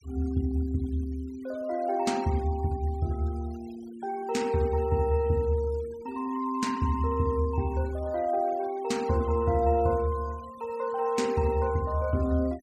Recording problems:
denoising artefacts; signal-to-artefact ratio 23 dB

